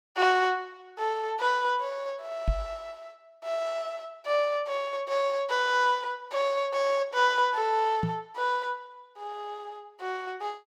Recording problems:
microphone thump; at 2.5 s and at 8 s; peak +4 dB vs average level

